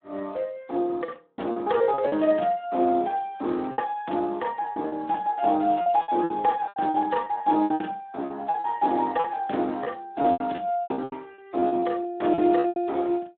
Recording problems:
telephone audio; 220 Hz to 3.7 kHz, Speex
packet loss; 13% of the sound replaced, filled with repeated pitch periods

